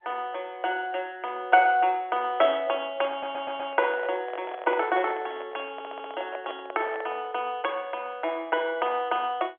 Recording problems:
phone line; 280 Hz to 3.4 kHz, G.711
handling noise; from 3 to 7.5 s; peak -5 dB vs average level
audio stuttering; at 3 s and at 5.5 s

